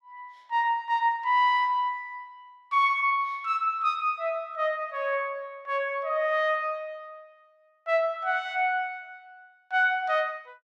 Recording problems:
none

